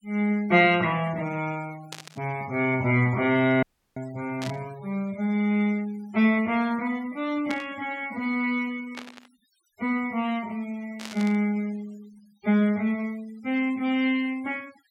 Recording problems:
noise reduction artefacts; signal-to-artefact ratio 23 dB
static burst; 5 times, first at 2 s; peak -5 dB vs average level
dropout; at 3.5 s

